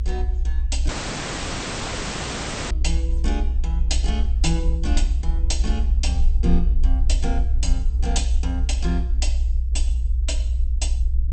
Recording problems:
lossy compression; MP2, log-spectral distance 3 dB, nothing above 8.5 kHz
rumble; below 62 Hz, SNR -7 dB
dropout; at 1 s for 2 s

